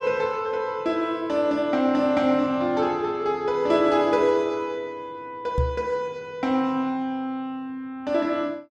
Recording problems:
knock on the microphone; at 5.5 s; peak +3 dB vs average level

